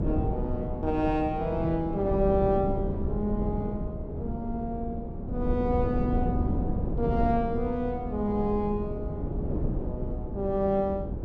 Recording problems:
wind noise; below 230 Hz, SNR 3 dB

